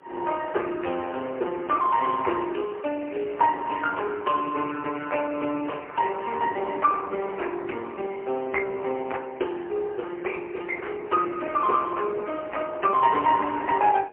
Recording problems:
telephone audio; 300 Hz to 3.1 kHz, AMR-NB, then MP3
wind on the microphone; below 710 Hz, SNR 20 dB

